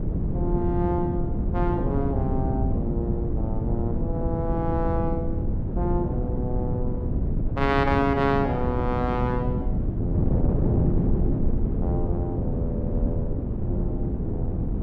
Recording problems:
wind noise; below 190 Hz, SNR -2 dB

